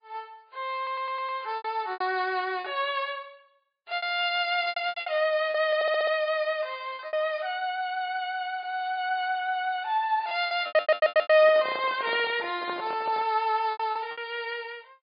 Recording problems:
codec artefacts; MP3, log-spectral distance 2 dB, nothing above 4.2 kHz
lost packets; 8% of the sound replaced, filled with repeated pitch periods
audio stuttering; at 1 s, at 6 s and at 11 s
handling noise; from 11 to 13 s; peak -6 dB vs average level

